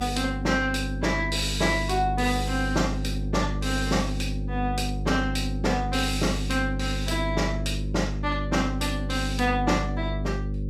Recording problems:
electrical hum; 50 Hz, harmonics up to 550 Hz, SNR 3 dB

